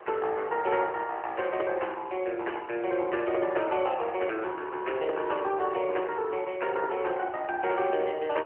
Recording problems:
phone line; 320 Hz to 3.1 kHz, AMR-NB
background hiss; SNR 19 dB
wind on the microphone; below 660 Hz, SNR 22 dB

